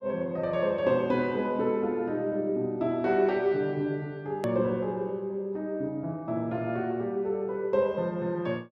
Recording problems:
edit click; at 4.5 s

